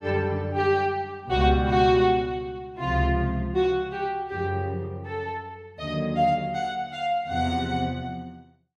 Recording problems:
none

